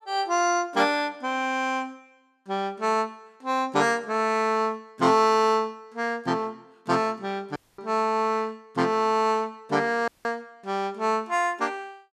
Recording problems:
audio cutting out; at 7.5 s and at 10 s

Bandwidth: 14.5 kHz